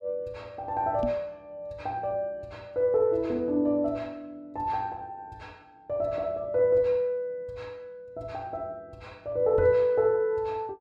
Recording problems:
microphone thump; at 1 s and at 9.5 s; peak -2 dB vs average level

